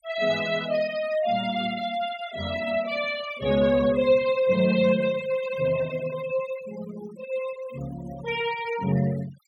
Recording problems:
denoising artefacts; signal-to-artefact ratio 16 dB

